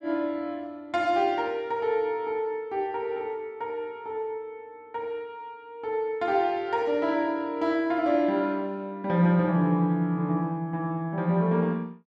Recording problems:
none

